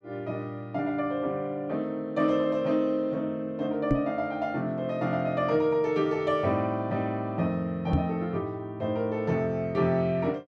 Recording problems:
microphone thump; at 4 s and at 8 s; peak +6 dB vs average level

